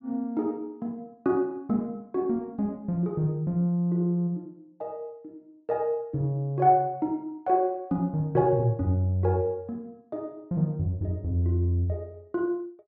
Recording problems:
treble missing; nothing above 8 kHz

